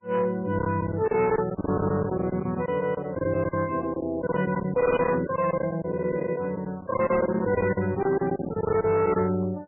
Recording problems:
lossy codec; MP3, log-spectral distance 3 dB, nothing above 2.4 kHz
distorted audio; hard clipping, signal-to-distortion ratio 12 dB
packet loss; 15% of the sound replaced, filled with silence

